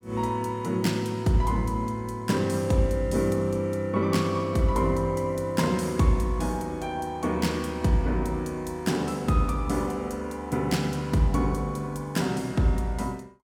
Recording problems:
none

